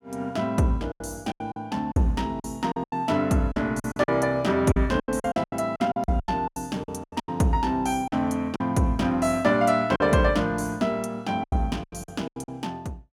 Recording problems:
lost packets; 14% of the sound replaced, filled with silence

